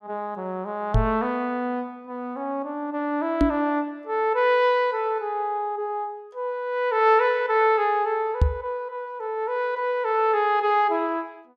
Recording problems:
microphone bump; at 1 s, at 3.5 s and at 8.5 s; peak +8 dB vs average level

